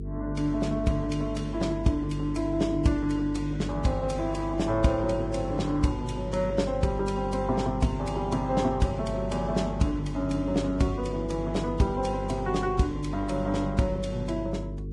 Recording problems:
lossy compression; Vorbis, log-spectral distance 2 dB, nothing above 10.4 kHz
hum; 50 Hz, harmonics up to 450 Hz, SNR 7 dB

